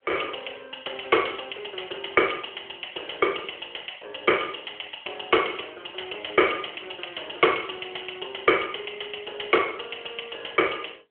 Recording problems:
telephone audio; 300 Hz to 3.3 kHz, AMR-NB

